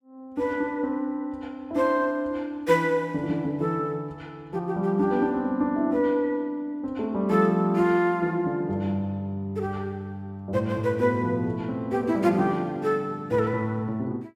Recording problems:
none

